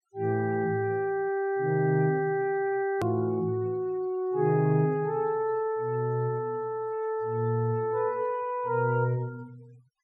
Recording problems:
denoising artefacts; signal-to-artefact ratio 28 dB
edit click; at 3 s

